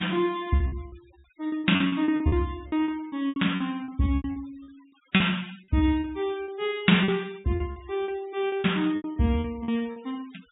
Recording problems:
treble cut off; nothing above 4 kHz
denoising artefacts; signal-to-artefact ratio 23 dB
lost packets; 16% of the sound replaced, filled with repeated pitch periods

